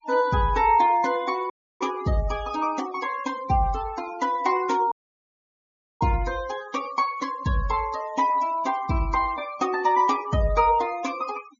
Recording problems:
treble cut off; nothing above 7 kHz
denoising artefacts; signal-to-artefact ratio 17 dB
dropout; at 1.5 s and at 5 s for 1 s

